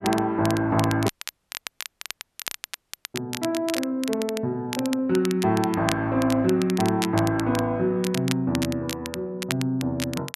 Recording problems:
crackling; vinyl, SNR 10 dB
dropout; at 1 s for 2 s

